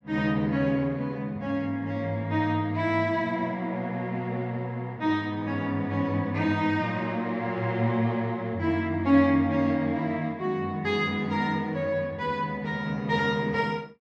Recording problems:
none

